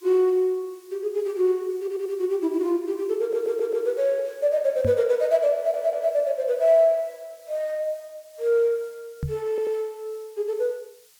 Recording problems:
background hiss; slope +3 dB per octave, SNR 29 dB
stutter; 4 times, first at 2 s
microphone thump; at 5 s and at 9 s; peak -1 dB vs average level

